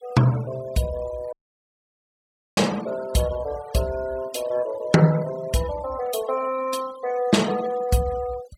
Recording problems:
noise reduction artefacts; signal-to-artefact ratio 18 dB
dropout; at 1.5 s for 1 s

